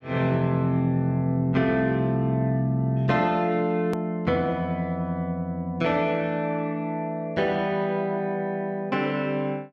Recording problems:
edit click; at 4 s

